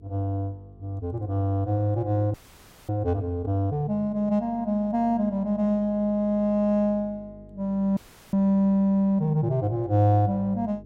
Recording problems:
electrical hum; 50 Hz, harmonics up to 450 Hz, SNR 24 dB
audio freezing; at 2.5 s for 0.5 s and at 8 s

